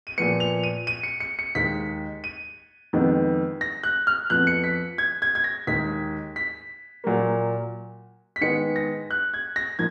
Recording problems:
none

